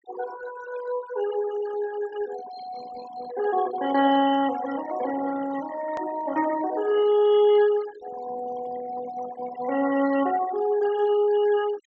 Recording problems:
treble cut off; nothing above 8 kHz
noise reduction artefacts; signal-to-artefact ratio 15 dB
hard cut with a click; at 6 s

